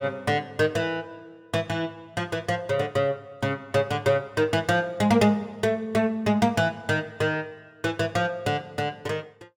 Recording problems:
none

